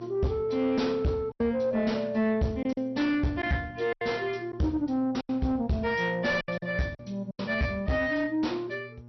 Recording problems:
lossy compression; MP2, log-spectral distance 2 dB, nothing above 5.8 kHz
distorted audio; soft clipping, signal-to-distortion ratio 10 dB
mains hum; 60 Hz, harmonics up to 840 Hz, SNR 20 dB
packet loss; 6% of the sound replaced, filled with silence

